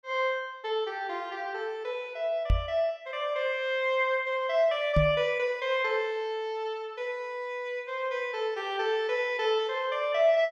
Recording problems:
knock on the microphone; at 2.5 s and at 5 s; peak +6 dB vs average level

